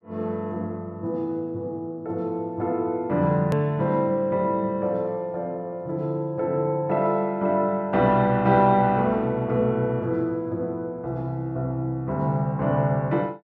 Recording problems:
edit click; at 3.5 s

